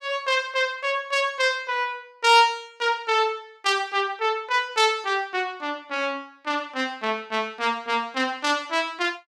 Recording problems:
none

